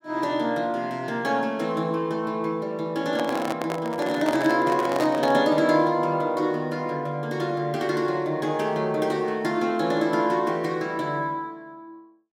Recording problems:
microphone handling noise; from 3 to 5.5 s; peak 0 dB vs average level

